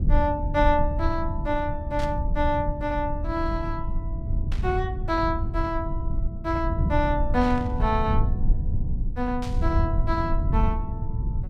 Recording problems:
low-frequency rumble; below 88 Hz, SNR 1 dB
static burst; 4 times, first at 2 s; peak -9 dB vs average level

